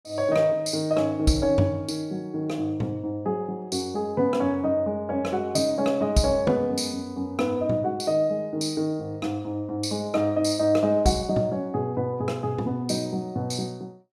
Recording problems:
none

